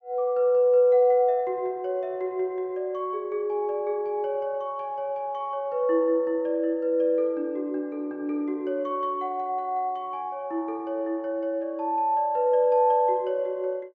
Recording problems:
treble cut off; nothing above 8 kHz

